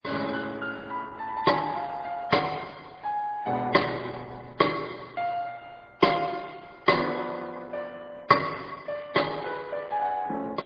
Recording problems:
codec artefacts; MP3, then Opus, log-spectral distance 4 dB

